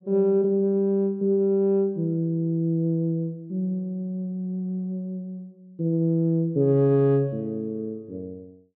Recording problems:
none

